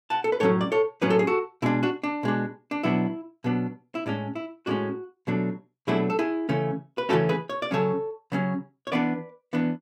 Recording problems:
none

